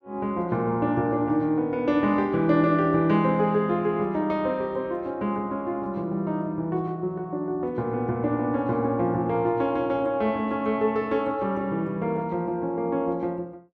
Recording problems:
none

